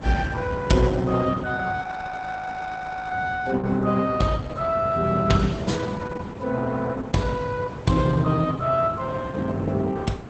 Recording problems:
lossy compression; Opus, log-spectral distance 3 dB, nothing above 8 kHz
wind on the microphone; below 400 Hz, SNR 12 dB
frozen audio; at 2 s for 1.5 s

